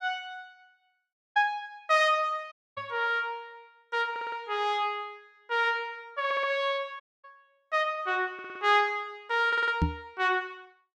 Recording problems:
dropout; at 1 s, at 2.5 s and at 7 s
microphone thump; at 3 s and at 10 s; peak +5 dB vs average level
audio stuttering; 4 times, first at 4 s

